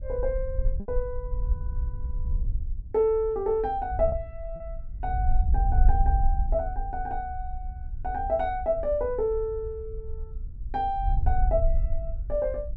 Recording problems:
wind noise; below 60 Hz, SNR 2 dB
lost packets; 1% of the sound replaced, filled with repeated pitch periods

